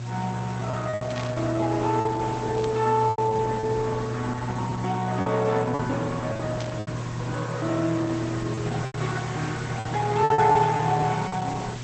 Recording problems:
lossy compression; Opus, log-spectral distance 8 dB, nothing above 7.8 kHz
mains hum; 60 Hz, harmonics up to 720 Hz, SNR 7 dB
hiss; slope 0 dB per octave, SNR 15 dB
lost packets; 8% of the sound replaced, filled with repeated pitch periods
static burst; at 1 s, at 2.5 s and at 6.5 s; peak -6 dB vs average level

